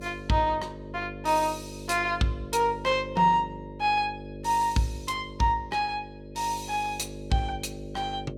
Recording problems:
mains hum; 50 Hz, harmonics up to 600 Hz, SNR 13 dB

